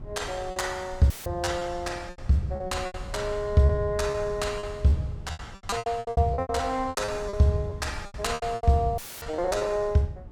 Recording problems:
wind on the microphone; below 120 Hz, SNR 15 dB
packet loss; 15% of the sound replaced, filled with repeated pitch periods
dropout; at 1 s and at 9 s; filled with static

